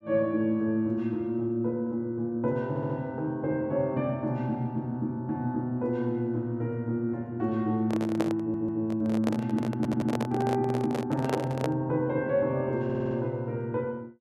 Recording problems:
audio stuttering; 4 times, first at 2.5 s
microphone handling noise; from 8 to 12 s; peak +3 dB vs average level

